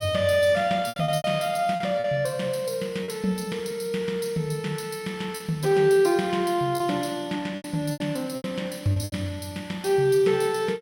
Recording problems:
lost packets; 7% of the sound replaced, filled with repeated pitch periods

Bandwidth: 16.5 kHz